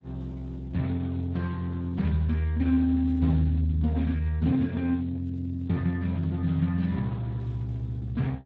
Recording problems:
lossy compression; Speex, log-spectral distance 2 dB, nothing above 13.1 kHz

